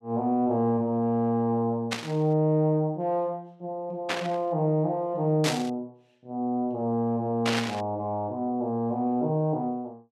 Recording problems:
static burst; 4 times, first at 2 s; peak +3 dB vs average level

